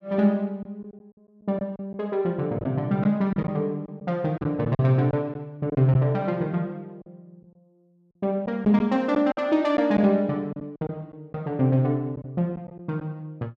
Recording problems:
packet loss; 6% of the sound replaced, filled with silence

